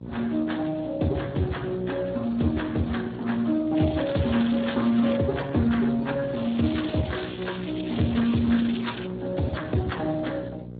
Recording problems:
codec artefacts; AAC, then Speex, log-spectral distance 9 dB, nothing above 3.9 kHz
hum; 60 Hz, harmonics up to 900 Hz, SNR 12 dB
crackling; from 3.5 to 5 s and from 6.5 to 9 s; loose cable, SNR 14 dB

